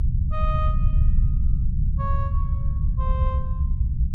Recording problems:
rumble; below 90 Hz, SNR -10 dB

